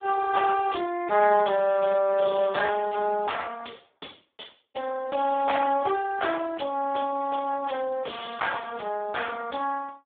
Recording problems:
phone line; 240 Hz to 3.6 kHz, Speex

